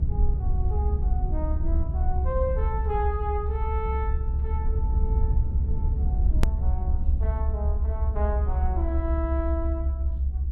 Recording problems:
rumble; below 70 Hz, SNR -8 dB
hard cut with a click; at 6.5 s

